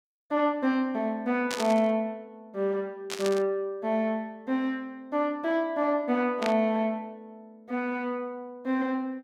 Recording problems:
static burst; at 1.5 s, at 3 s and at 6.5 s; peak 0 dB vs average level

